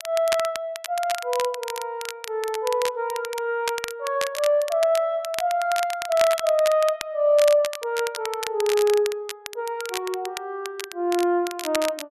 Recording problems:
crackling; vinyl, SNR 10 dB

